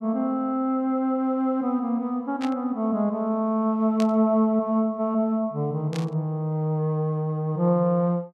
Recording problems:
burst of static; at 2.5 s, at 4 s and at 6 s; peak -7 dB vs average level

